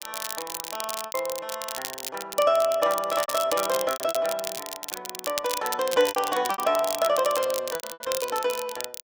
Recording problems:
crackle; vinyl, SNR 7 dB
lost packets; 10% of the sound replaced, filled with repeated pitch periods

